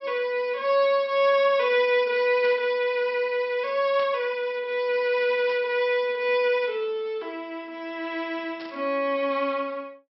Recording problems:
treble cut off; nothing above 5.6 kHz
static burst; 4 times, first at 2.5 s; peak -13 dB vs average level

